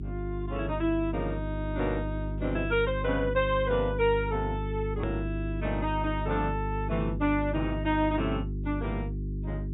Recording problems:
low-pass filter; nothing above 4 kHz
hum; 50 Hz, harmonics up to 400 Hz, SNR 4 dB
hard cut with a click; at 5 s

